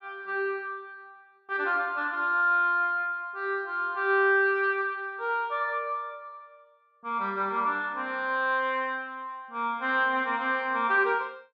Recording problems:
none

